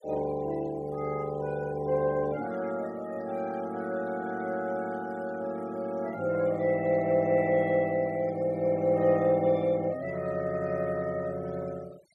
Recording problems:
noise reduction artefacts; signal-to-artefact ratio 22 dB

